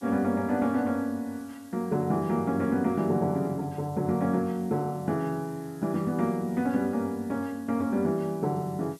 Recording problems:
hiss; SNR 27 dB

